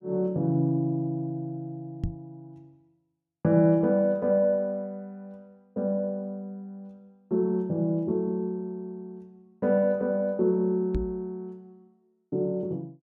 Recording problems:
knock on the microphone; at 2 s and at 11 s; peak +1 dB vs average level

